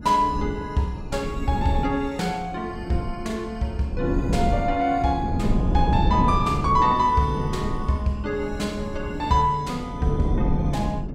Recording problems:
wind noise; below 210 Hz, SNR 4 dB

